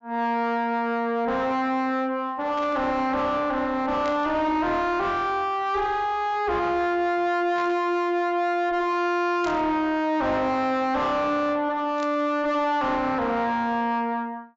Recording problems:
low-pass filter; nothing above 7.4 kHz
distortion; soft clipping, signal-to-distortion ratio 5 dB
static burst; 5 times, first at 2.5 s; peak -11 dB vs average level

